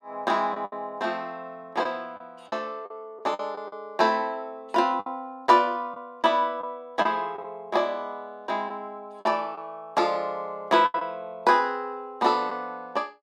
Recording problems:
packet loss; 5% of the sound replaced, filled with the last packet

